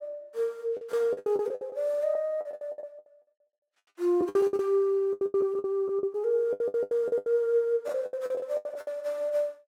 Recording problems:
packet loss; 20% of the sound replaced, filled with the last packet

